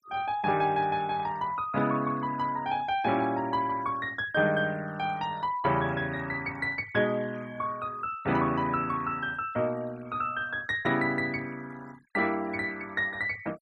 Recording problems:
noise reduction artefacts; signal-to-artefact ratio 22 dB

